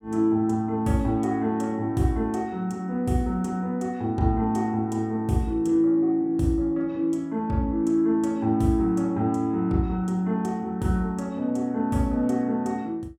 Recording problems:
none

